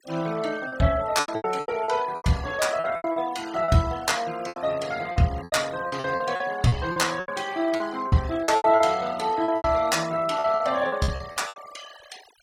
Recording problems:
denoising artefacts; signal-to-artefact ratio 19 dB
packet loss; 15% of the sound replaced, filled with repeated pitch periods

